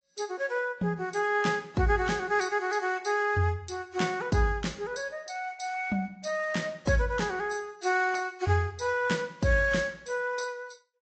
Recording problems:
treble cut off; nothing above 8 kHz
lossy codec; AAC, log-spectral distance 3 dB

